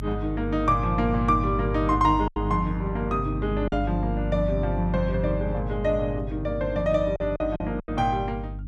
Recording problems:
hum; 50 Hz, harmonics up to 300 Hz, SNR 6 dB
packet loss; 4% of the sound replaced, filled with silence

